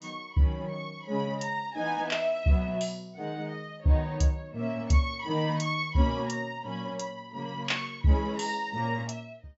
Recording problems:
low-pass filter; nothing above 7.6 kHz

